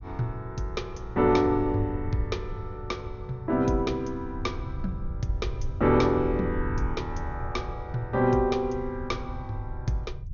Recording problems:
treble cut off; nothing above 6.7 kHz
low-frequency rumble; below 100 Hz, SNR 9 dB

